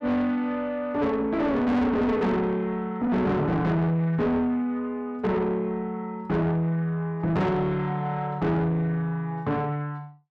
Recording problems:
distortion; soft clipping, signal-to-distortion ratio 7 dB

